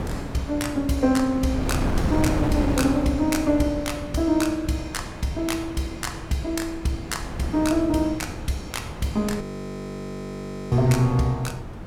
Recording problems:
wind on the microphone; below 360 Hz, SNR 7 dB
frozen audio; at 9.5 s for 1.5 s

